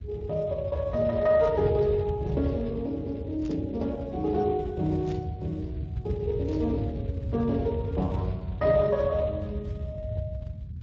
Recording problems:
codec artefacts; MP3, then Speex, log-spectral distance 2 dB
low-frequency rumble; below 120 Hz, SNR 7 dB
burst of static; 4 times, first at 1.5 s; peak -16 dB vs average level

